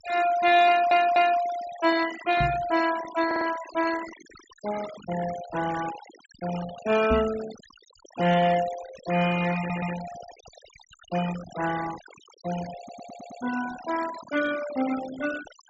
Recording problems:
treble cut off; nothing above 8 kHz
noise reduction artefacts; signal-to-artefact ratio 13 dB
stutter; 4 times, first at 0.5 s
knock on the microphone; at 2.5 s and at 7 s; peak +1 dB vs average level

